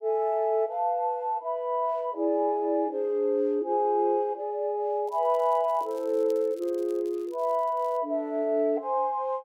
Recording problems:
crackling; from 5 to 8 s; loose cable, SNR 30 dB

